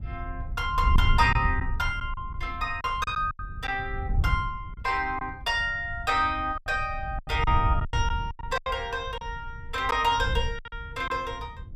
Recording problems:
wind on the microphone; below 88 Hz, SNR 5 dB
packet loss; 8% of the sound replaced, filled with silence

